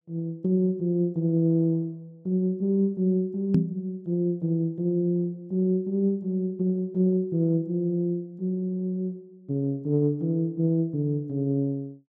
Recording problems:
microphone bump; at 3.5 s; peak +7 dB vs average level

